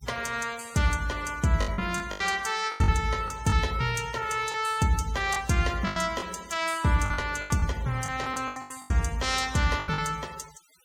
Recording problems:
denoising artefacts; signal-to-artefact ratio 21 dB
lost packets; 10% of the sound replaced, filled with the last packet

